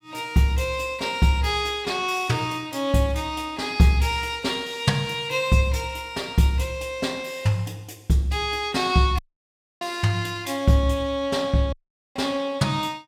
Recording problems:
audio cutting out; at 9 s for 0.5 s and at 12 s

